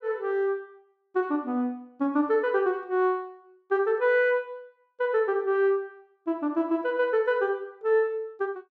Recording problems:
none

